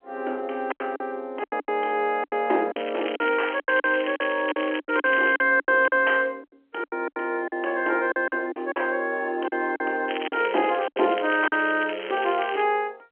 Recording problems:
phone line; 260 Hz to 3.3 kHz, G.711
lost packets; 12% of the sound replaced, filled with silence
crackling; from 3 to 5.5 s and from 10 to 13 s; loose cable, SNR 12 dB

